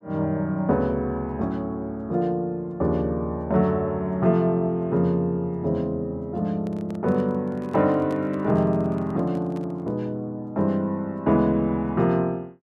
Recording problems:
microphone handling noise; from 6.5 to 10 s; peak -10 dB vs average level

